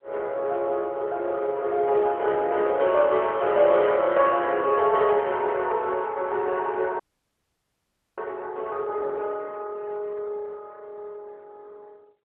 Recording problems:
phone line; 320 Hz to 3.2 kHz, AMR-NB
dropout; at 7 s for 1 s

